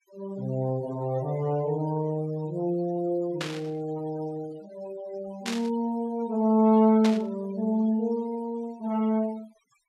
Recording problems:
noise reduction artefacts; signal-to-artefact ratio 23 dB
static burst; at 3.5 s, at 5.5 s and at 7 s; peak -1 dB vs average level

